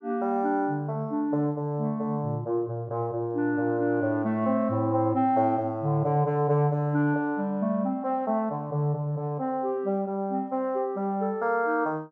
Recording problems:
none

